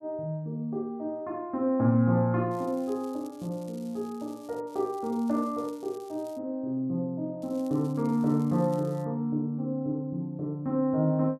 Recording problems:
crackling; from 2.5 to 4.5 s, from 4.5 to 6.5 s and from 7.5 to 9 s; loose cable, SNR 26 dB

